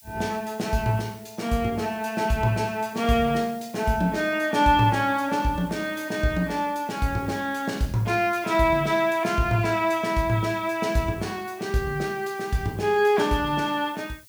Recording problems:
background hiss; SNR 24 dB

